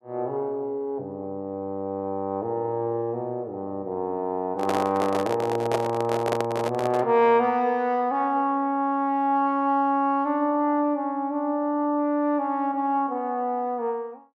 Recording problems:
handling noise; from 4.5 to 7 s; peak +3 dB vs average level

